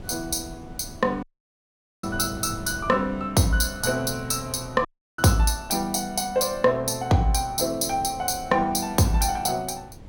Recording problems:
wind on the microphone; below 260 Hz, SNR 19 dB
audio cutting out; at 1 s for 1 s and at 5 s

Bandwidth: 17.5 kHz